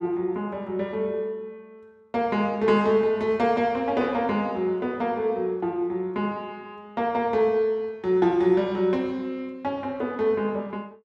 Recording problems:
none

